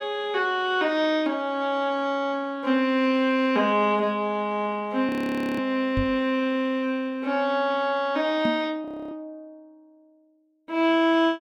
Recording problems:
frozen audio; at 5 s and at 9 s
microphone bump; at 6 s and at 8.5 s; peak 0 dB vs average level

